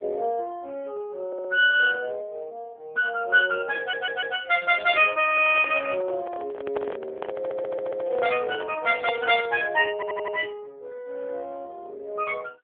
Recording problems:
phone line; 320 Hz to 3.5 kHz, AMR-NB
stutter; 4 times, first at 1.5 s
microphone handling noise; from 5 to 9.5 s; peak -4 dB vs average level

